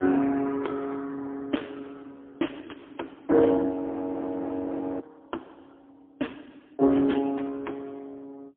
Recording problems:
phone line; 240 Hz to 3.4 kHz, AMR-NB, then MP3
audio freezing; at 3.5 s for 1.5 s

